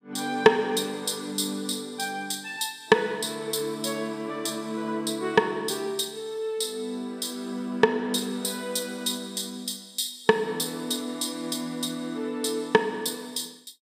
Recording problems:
none

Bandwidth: 15 kHz